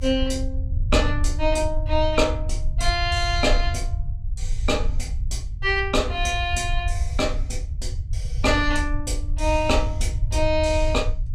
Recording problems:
rumble; below 72 Hz, SNR 3 dB

